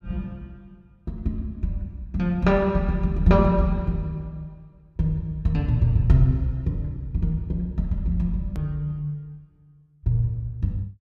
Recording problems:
edit click; at 8.5 s

